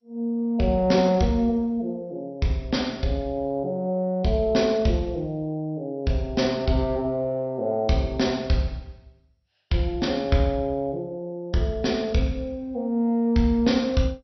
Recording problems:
lossy codec; MP2, log-spectral distance 2 dB, nothing above 5.8 kHz

